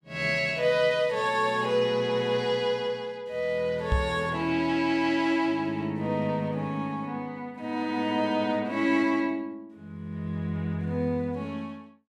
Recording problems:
knock on the microphone; at 4 s; peak +4 dB vs average level

